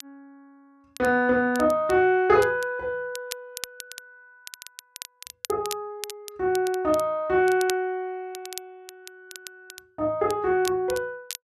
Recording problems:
crackling; vinyl, SNR 16 dB

